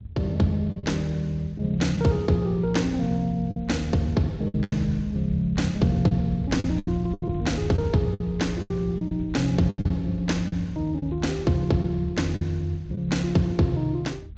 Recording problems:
lossy codec; Speex, log-spectral distance 2 dB, nothing above 7.3 kHz
rumble; below 110 Hz, SNR 12 dB
lost packets; 7% of the sound replaced, filled with the last packet

